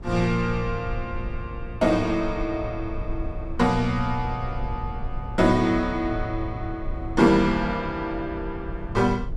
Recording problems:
rumble; below 80 Hz, SNR 10 dB

